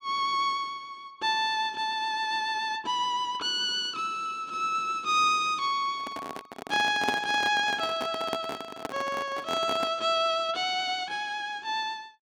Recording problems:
microphone handling noise; from 6 to 10 s; peak +2 dB vs average level

